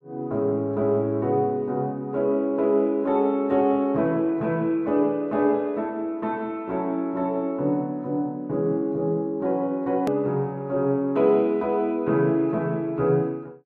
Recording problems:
hard cut with a click; at 10 s

